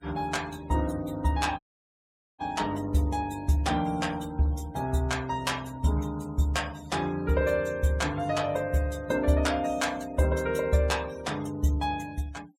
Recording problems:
noise reduction artefacts; signal-to-artefact ratio 22 dB
audio cutting out; at 1.5 s for 1 s

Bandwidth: 16 kHz